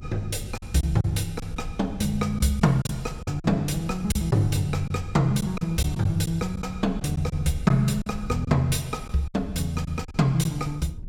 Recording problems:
rumble; below 94 Hz, SNR 14 dB
lost packets; 6% of the sound replaced, filled with silence

